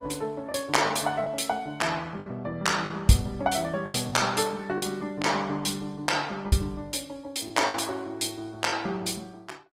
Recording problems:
lossy codec; Opus, log-spectral distance 4 dB, nothing above 18.9 kHz
lost packets; 5% of the sound replaced, filled with the last packet

